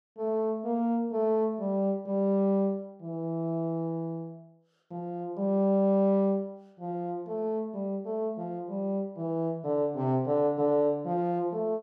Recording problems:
none

